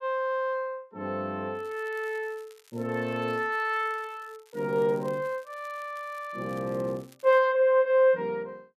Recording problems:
crackling; from 1.5 to 3.5 s and from 3.5 to 7.5 s; loose cable, SNR 29 dB

